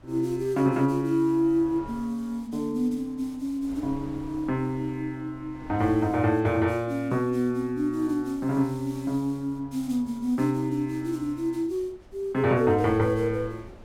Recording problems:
wind noise; below 440 Hz, SNR 22 dB

